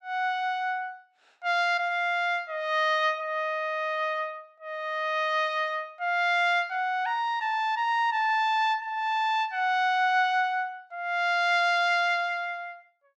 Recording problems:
none

